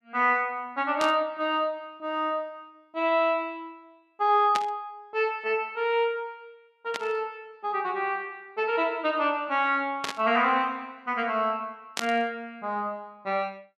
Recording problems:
static burst; 5 times, first at 1 s; peak +1 dB vs average level

